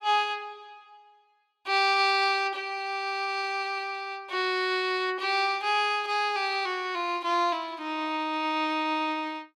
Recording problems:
none

